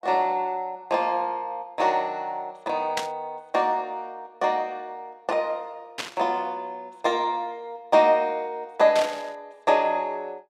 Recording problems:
static burst; at 3 s, at 6 s and at 9 s; peak +1 dB vs average level

